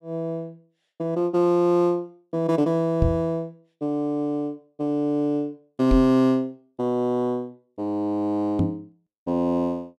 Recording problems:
knock on the microphone; at 3 s, at 6 s and at 8.5 s; peak +6 dB vs average level

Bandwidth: 13.5 kHz